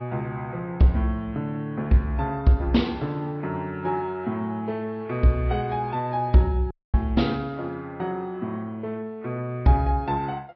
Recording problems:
low-pass filter; nothing above 5.5 kHz
lossy codec; Vorbis, log-spectral distance 2 dB
audio cutting out; at 6.5 s

